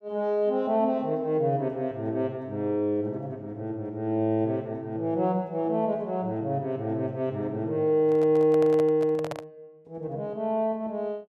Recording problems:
handling noise; from 8 to 9.5 s; peak -4 dB vs average level

